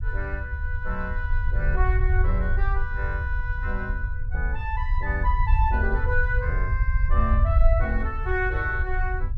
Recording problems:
rumble; below 70 Hz, SNR -4 dB

